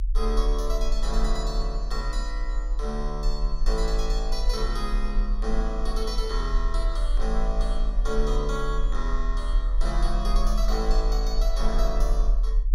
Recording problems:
low-frequency rumble; below 40 Hz, strongest tone 38 Hz, SNR -4 dB

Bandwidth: 16 kHz